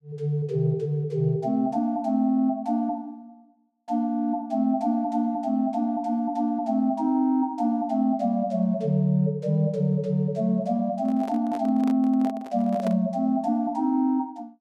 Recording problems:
microphone handling noise; from 11 to 13 s; peak -7 dB vs average level

